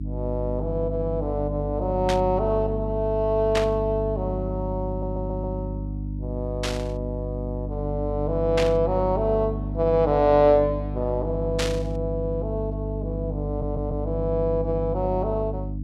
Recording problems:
hum; 50 Hz, harmonics up to 300 Hz, SNR 5 dB
burst of static; 5 times, first at 2 s; peak +2 dB vs average level
stutter; at 5 s and at 13 s

